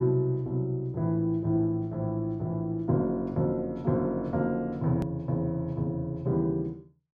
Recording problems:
click at an edit; at 5 s

